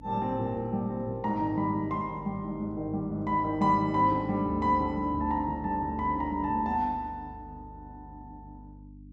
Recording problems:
electrical hum; 50 Hz, harmonics up to 300 Hz, SNR 19 dB

